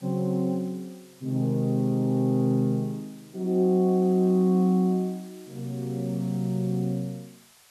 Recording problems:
background hiss; SNR 27 dB

